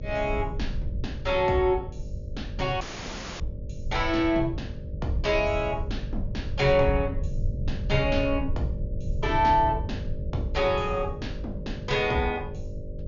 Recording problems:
treble cut off; nothing above 6.9 kHz
hum; 50 Hz, harmonics up to 600 Hz, SNR 16 dB
low-frequency rumble; below 94 Hz, SNR 8 dB
audio cutting out; at 3 s for 0.5 s

